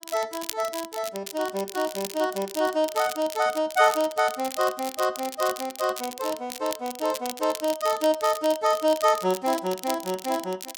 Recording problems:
crackle; vinyl, SNR 12 dB

